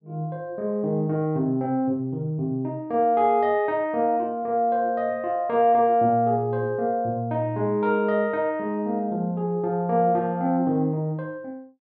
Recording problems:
none

